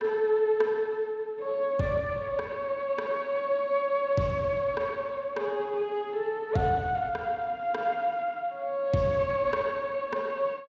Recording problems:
lossy compression; Speex, log-spectral distance 2 dB

